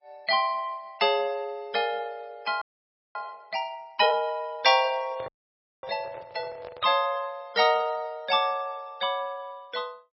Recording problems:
codec artefacts; MP3, log-spectral distance 2 dB, nothing above 5.2 kHz
audio freezing; at 2.5 s for 0.5 s and at 5.5 s for 0.5 s
microphone handling noise; from 5 to 7 s; peak -9 dB vs average level

